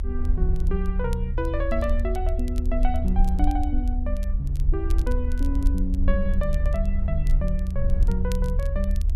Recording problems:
low-frequency rumble; below 70 Hz, SNR -4 dB
crackle; vinyl, SNR 21 dB

